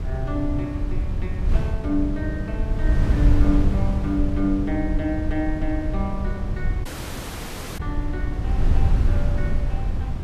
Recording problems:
wind on the microphone; below 86 Hz, SNR -3 dB
audio cutting out; at 7 s for 1 s

